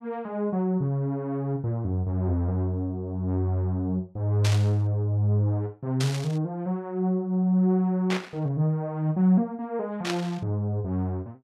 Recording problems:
static burst; 4 times, first at 4.5 s; peak 0 dB vs average level

